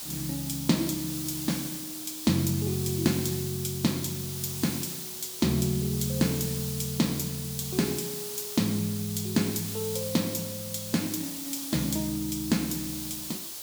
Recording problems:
hiss; SNR 5 dB

